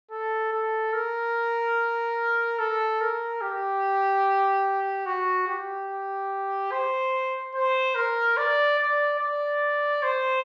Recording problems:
none

